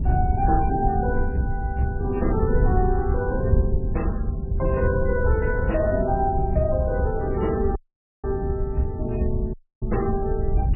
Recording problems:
codec artefacts; MP3, log-spectral distance 2 dB, nothing above 2.4 kHz
wind noise; below 96 Hz, SNR 2 dB
dropout; at 8 s and at 9.5 s

